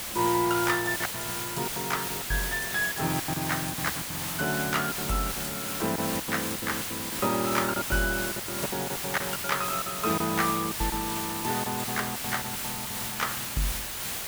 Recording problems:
hiss; slope 0 dB per octave, SNR 1 dB
lost packets; 14% of the sound replaced, filled with silence

